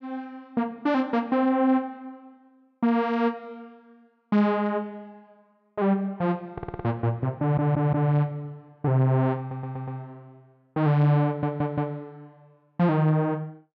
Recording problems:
stutter; 4 times, first at 6.5 s

